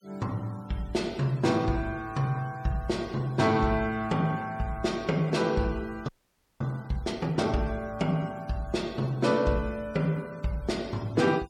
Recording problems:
denoising artefacts; signal-to-artefact ratio 24 dB
frozen audio; at 6 s for 0.5 s

